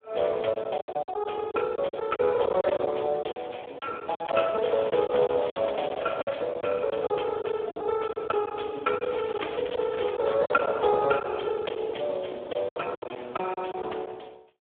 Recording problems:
phone line; 320 Hz to 2.4 kHz, Speex
packet loss; 11% of the sound replaced, filled with silence
crackling; from 4.5 to 6.5 s and from 9 to 10 s; loose cable, SNR 19 dB

